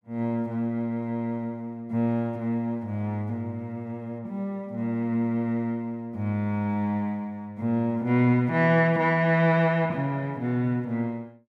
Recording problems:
none

